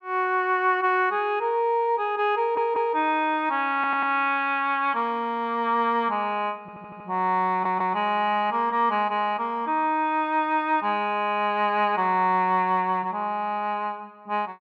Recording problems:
audio stuttering; 4 times, first at 2.5 s

